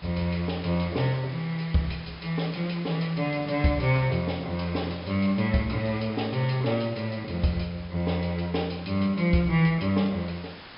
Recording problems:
treble missing; nothing above 5.5 kHz
hiss; SNR 18 dB

